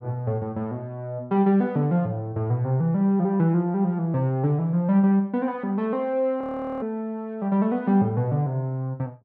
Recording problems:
audio freezing; at 6.5 s

